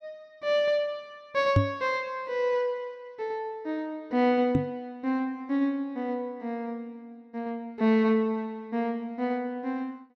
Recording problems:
microphone thump; at 1.5 s and at 4.5 s; peak +10 dB vs average level

